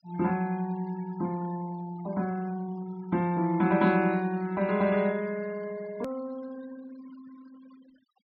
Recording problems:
treble cut off; nothing above 5.5 kHz
denoising artefacts; signal-to-artefact ratio 22 dB
click at an edit; at 6 s

